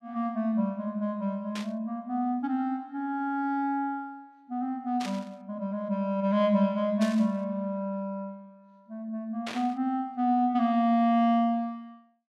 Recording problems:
burst of static; 4 times, first at 1.5 s; peak -5 dB vs average level

